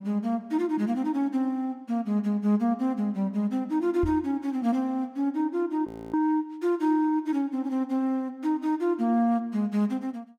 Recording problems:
microphone thump; at 4 s; peak -1 dB vs average level
frozen audio; at 6 s

